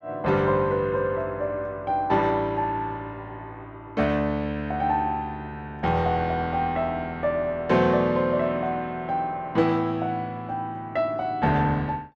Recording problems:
none

